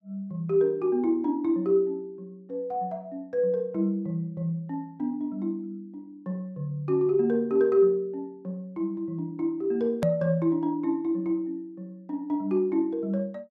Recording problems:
click at an edit; at 10 s

